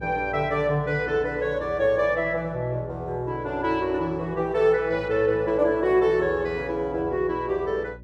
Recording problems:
mains hum; 60 Hz, harmonics up to 600 Hz, SNR 20 dB

